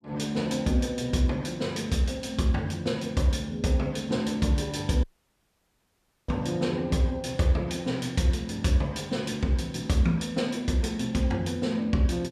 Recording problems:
audio cutting out; at 5 s for 1.5 s

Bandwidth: 14.5 kHz